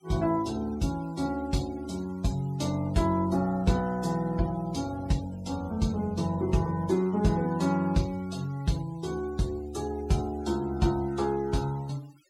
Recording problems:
denoising artefacts; signal-to-artefact ratio 22 dB

